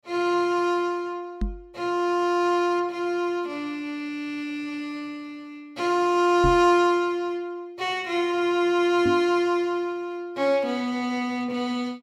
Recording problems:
microphone bump; at 1.5 s, at 6.5 s and at 9 s; peak 0 dB vs average level

